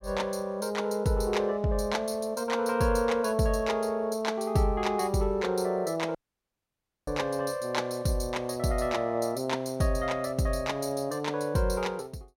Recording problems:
audio cutting out; at 6 s for 1 s

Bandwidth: 16 kHz